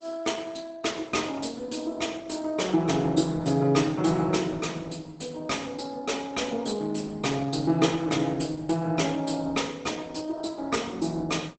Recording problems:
codec artefacts; Opus, log-spectral distance 5 dB, nothing above 8 kHz

